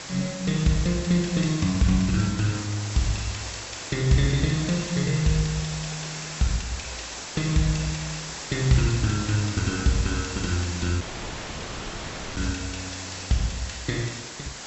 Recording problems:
low-pass filter; nothing above 7.7 kHz
hiss; slope -1 dB per octave, SNR 9 dB
audio cutting out; at 11 s for 1.5 s

